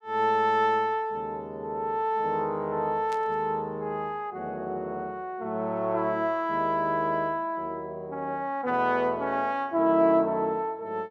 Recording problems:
static burst; at 3 s; peak -12 dB vs average level

